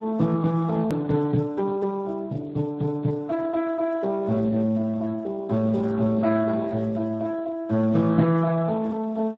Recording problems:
lossy compression; MP3, then Speex, log-spectral distance 2 dB, nothing above 13.1 kHz
click at an edit; at 1 s

